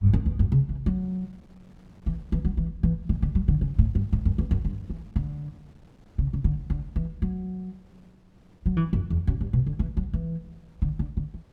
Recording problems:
wind noise; below 310 Hz, SNR 29 dB

